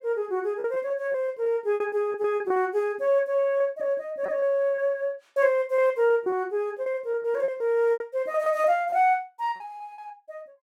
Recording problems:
lost packets; 11% of the sound replaced, filled with repeated pitch periods

